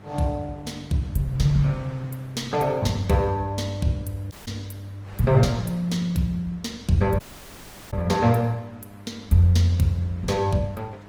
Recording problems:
lossy compression; Opus, log-spectral distance 2 dB, nothing above 19 kHz
hum; 50 Hz, harmonics up to 1.7 kHz, SNR 23 dB
wind on the microphone; below 1.8 kHz, SNR 26 dB
dropout; at 4.5 s and at 7 s for 0.5 s

